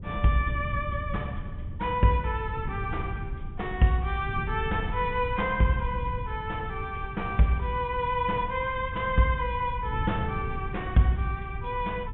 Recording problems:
low-pass filter; nothing above 3.5 kHz
wind noise; below 120 Hz, SNR 8 dB

